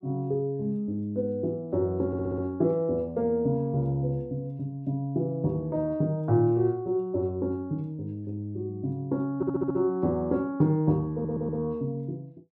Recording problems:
stutter; at 2 s, at 9.5 s and at 11 s

